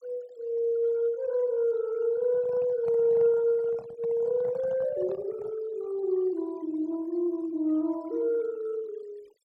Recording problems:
denoising artefacts; signal-to-artefact ratio 26 dB
microphone handling noise; from 2 to 5.5 s; peak -14 dB vs average level

